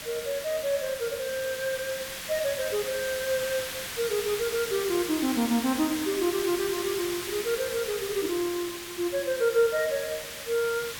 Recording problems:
background hiss; slope 0 dB per octave, SNR 6 dB

